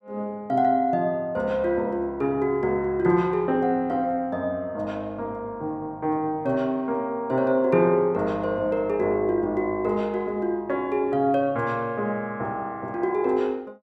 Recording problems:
none

